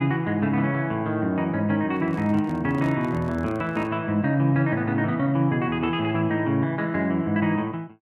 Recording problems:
handling noise; from 2 to 4 s; peak -10 dB vs average level

